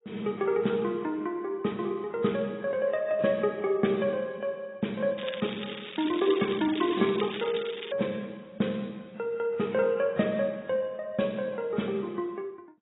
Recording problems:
lossy codec; AAC, log-spectral distance 6 dB, nothing above 3.8 kHz
crackling; from 5 to 8 s; loose cable, SNR 11 dB

